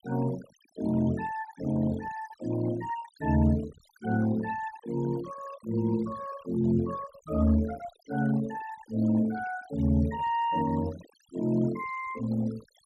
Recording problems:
noise reduction artefacts; signal-to-artefact ratio 17 dB

